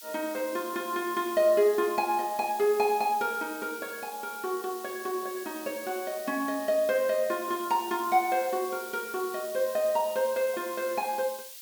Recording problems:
hiss; slope +7 dB per octave, SNR 13 dB

